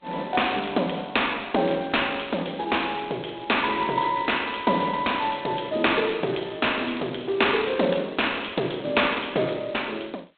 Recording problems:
phone line; 260 Hz to 3.8 kHz, G.726

